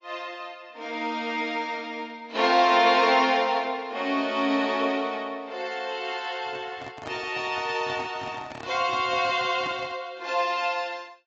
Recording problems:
lossy codec; AAC, log-spectral distance 3 dB, nothing above 6.9 kHz
handling noise; from 6.5 to 10 s; peak -8 dB vs average level

